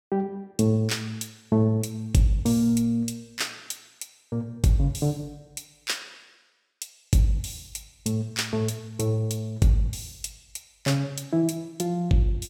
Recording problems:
none

